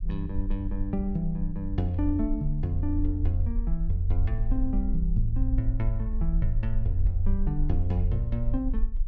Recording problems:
low-frequency rumble; below 48 Hz, SNR 1 dB

